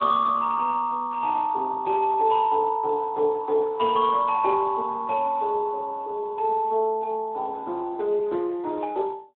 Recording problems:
telephone audio; 320 Hz to 2.5 kHz, Speex

